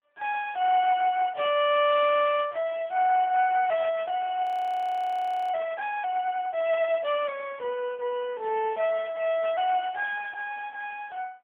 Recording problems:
telephone audio; 340 Hz to 3.3 kHz, AMR-NB
audio freezing; at 4.5 s for 1 s

